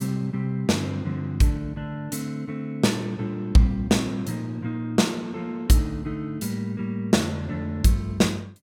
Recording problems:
none

